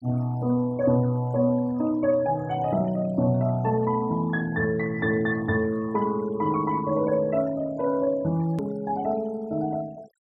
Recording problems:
denoising artefacts; signal-to-artefact ratio 23 dB
click at an edit; at 8.5 s

